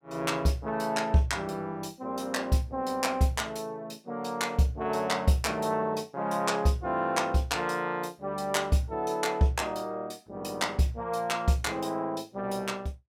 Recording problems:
none

